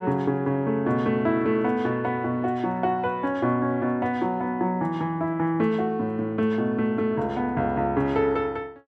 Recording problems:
none

